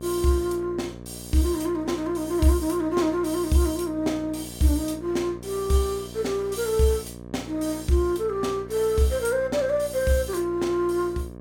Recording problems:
hum; 60 Hz, harmonics up to 1.3 kHz, SNR 15 dB

